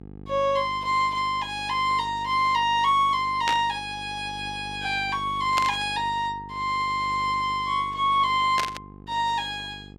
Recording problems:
electrical hum; 50 Hz, harmonics up to 900 Hz, SNR 19 dB
burst of static; at 3.5 s, at 5.5 s and at 8.5 s; peak +1 dB vs average level

